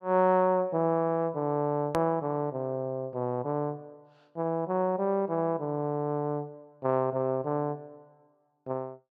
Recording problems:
edit click; at 2 s

